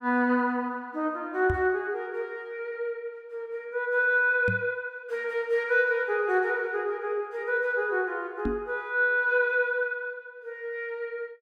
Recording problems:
microphone bump; at 1.5 s, at 4.5 s and at 8.5 s; peak +1 dB vs average level

